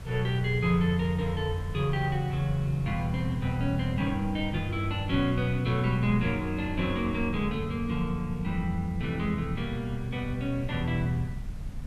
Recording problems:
background hiss; slope -4 dB per octave, SNR 23 dB
low-frequency rumble; below 110 Hz, SNR 11 dB

